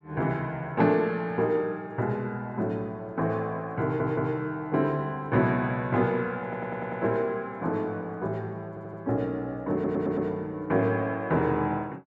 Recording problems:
audio stuttering; 4 times, first at 4 s

